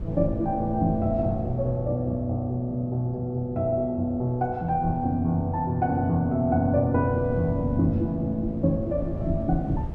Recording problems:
wind on the microphone; below 120 Hz, SNR 13 dB

